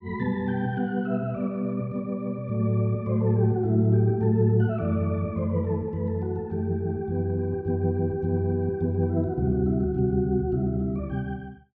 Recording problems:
none

